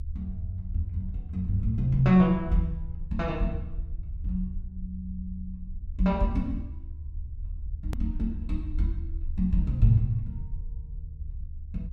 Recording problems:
low-frequency rumble; below 74 Hz, SNR 10 dB
edit click; at 8 s

